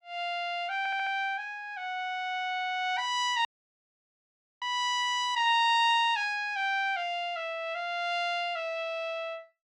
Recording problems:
stutter; at 1 s
dropout; at 3.5 s for 1 s

